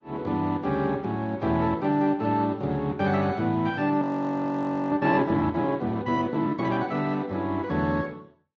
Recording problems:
lossy compression; Speex, then Vorbis, log-spectral distance 2 dB
frozen audio; at 4 s for 1 s

